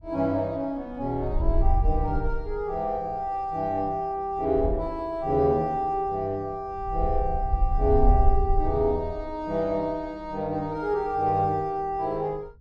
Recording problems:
wind noise; below 62 Hz, SNR 2 dB

